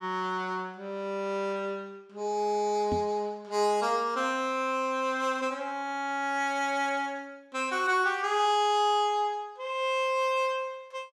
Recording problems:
knock on the microphone; at 3 s; peak -1 dB vs average level

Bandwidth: 14.5 kHz